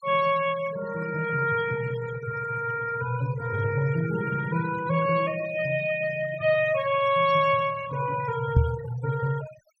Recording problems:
denoising artefacts; signal-to-artefact ratio 15 dB
microphone thump; at 8.5 s; peak +8 dB vs average level

